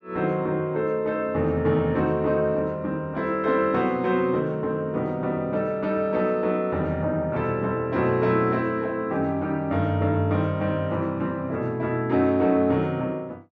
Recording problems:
none

